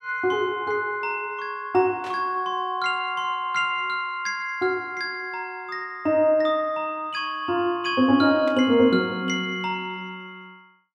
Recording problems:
static burst; at 2 s and at 8.5 s; peak -11 dB vs average level

